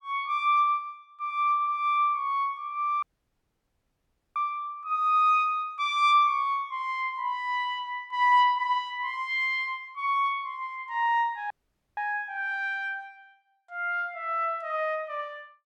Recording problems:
dropout; at 3 s for 1.5 s and at 12 s

